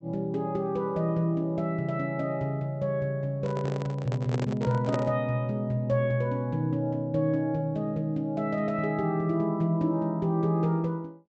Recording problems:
low-pass filter; nothing above 7.9 kHz
microphone handling noise; from 3.5 to 5 s; peak 0 dB vs average level

